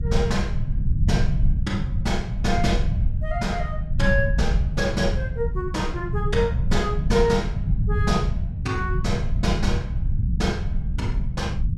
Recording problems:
rumble; below 120 Hz, SNR -1 dB

